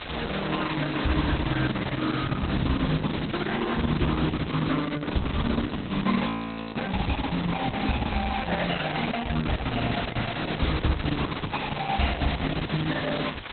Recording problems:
lossy compression; Opus, log-spectral distance 13 dB, nothing above 4 kHz
background hiss; SNR 7 dB
wind on the microphone; below 940 Hz, SNR 24 dB
audio freezing; at 6.5 s

